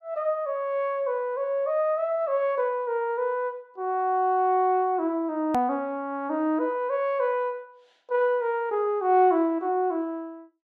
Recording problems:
click at an edit; at 5.5 s

